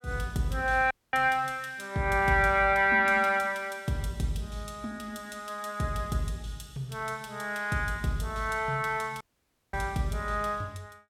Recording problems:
dropout; at 1 s and at 9 s for 0.5 s

